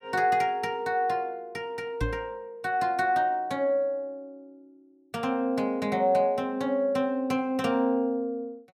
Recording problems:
microphone bump; at 2 s; peak +1 dB vs average level

